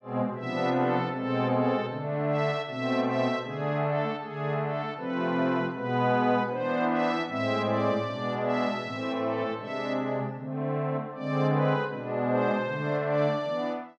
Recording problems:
none

